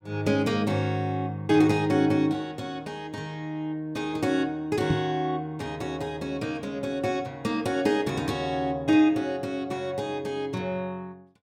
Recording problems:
microphone bump; at 5 s; peak +5 dB vs average level

